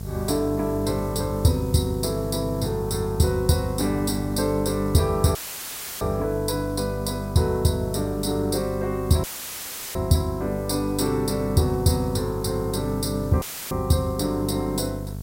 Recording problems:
hum; 50 Hz, harmonics up to 900 Hz, SNR 7 dB
background hiss; slope +6 dB per octave, SNR 22 dB
dropout; at 5.5 s for 0.5 s, at 9 s for 0.5 s and at 13 s; filled with static

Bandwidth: 16 kHz